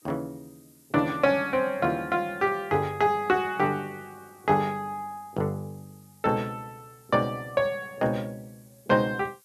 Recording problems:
hiss; slope +2 dB per octave, SNR 30 dB

